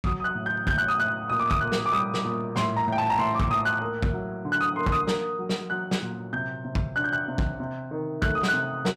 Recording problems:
distorted audio; hard clipping, uneven, signal-to-distortion ratio 11 dB

